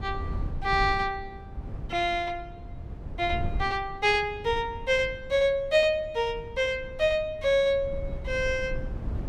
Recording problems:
rumble; below 110 Hz, SNR 12 dB

